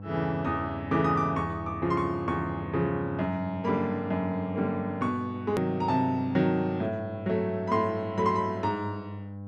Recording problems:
hum; 50 Hz, harmonics up to 800 Hz, SNR 12 dB
hard cut with a click; at 5.5 s

